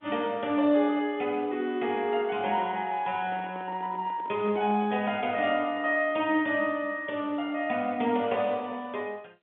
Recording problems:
telephone audio; 170 Hz to 3.6 kHz, G.711
handling noise; from 2 to 5 s; peak -11 dB vs average level

